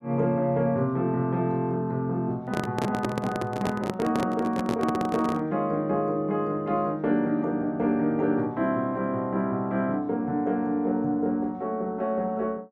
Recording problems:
handling noise; from 2.5 to 5.5 s; peak +2 dB vs average level

